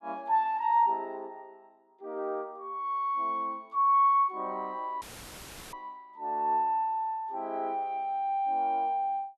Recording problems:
audio cutting out; at 5 s for 0.5 s; filled with static

